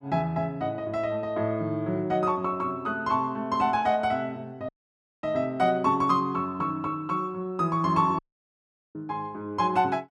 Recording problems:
audio cutting out; at 4.5 s for 0.5 s and at 8 s for 1 s

